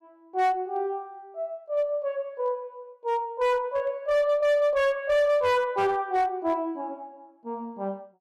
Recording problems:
distortion; hard clipping, uneven, signal-to-distortion ratio 10 dB

